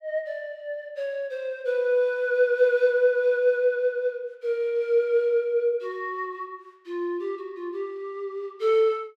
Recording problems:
none

